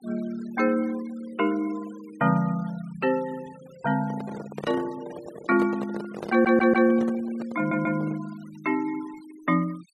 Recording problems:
noise reduction artefacts; signal-to-artefact ratio 22 dB
microphone handling noise; from 4 to 8 s; peak -4 dB vs average level
audio stuttering; at 6.5 s and at 7.5 s

